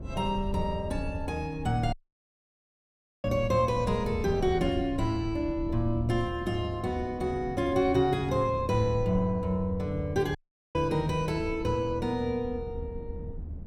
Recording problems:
low-frequency rumble; below 86 Hz, SNR 11 dB
wind on the microphone; below 290 Hz, SNR 18 dB
dropout; at 2 s for 1.5 s and at 10 s

